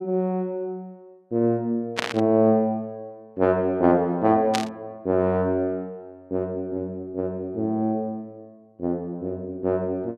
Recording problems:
burst of static; at 2 s and at 4.5 s; peak +4 dB vs average level

